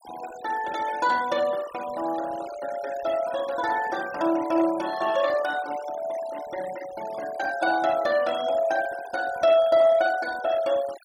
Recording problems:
denoising artefacts; signal-to-artefact ratio 17 dB

